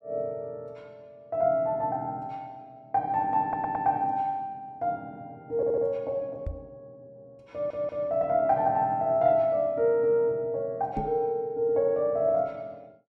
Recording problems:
audio stuttering; at 3.5 s, at 5.5 s and at 7.5 s
knock on the microphone; at 6.5 s and at 11 s; peak -3 dB vs average level

